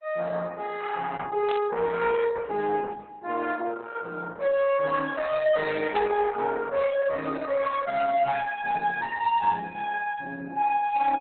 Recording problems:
lossy compression; Opus, log-spectral distance 3 dB, nothing above 3.9 kHz
distortion; soft clipping, signal-to-distortion ratio 12 dB
static burst; at 1.5 s and at 6 s; peak -6 dB vs average level

